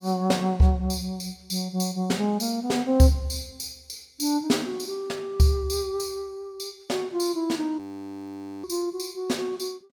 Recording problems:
audio freezing; at 8 s for 1 s

